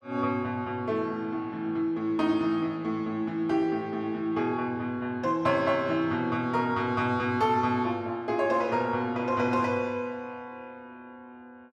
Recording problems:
none

